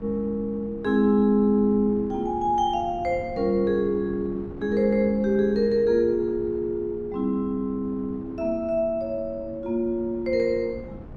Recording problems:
wind on the microphone; below 300 Hz, SNR 18 dB

